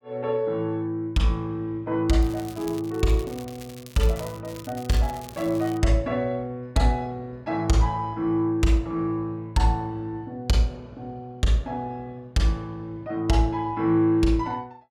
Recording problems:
crackle; from 2 to 4.5 s and from 4.5 to 6 s; loose cable, SNR 19 dB

